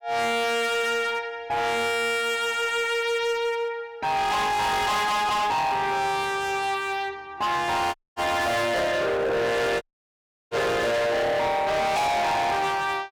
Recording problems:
distorted audio; hard clipping, uneven, signal-to-distortion ratio 6 dB
audio cutting out; at 8 s and at 10 s for 0.5 s

